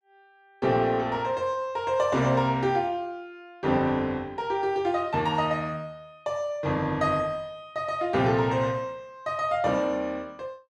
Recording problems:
none

